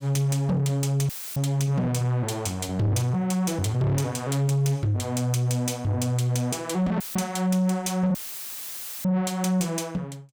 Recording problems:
distortion; soft clipping, signal-to-distortion ratio 10 dB
audio cutting out; at 1 s, at 7 s and at 8 s for 1 s; filled with static

